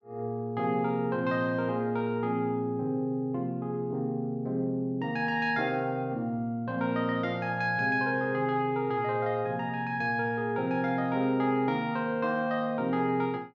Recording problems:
none

